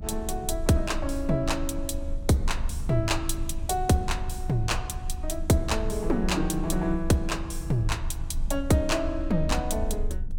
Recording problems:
electrical hum; 50 Hz, harmonics up to 650 Hz, SNR 20 dB
low-frequency rumble; below 68 Hz, strongest tone 20 Hz, SNR 7 dB

